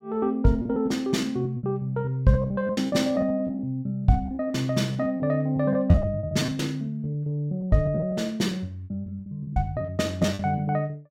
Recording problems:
lost packets; 14% of the sound replaced, filled with repeated pitch periods

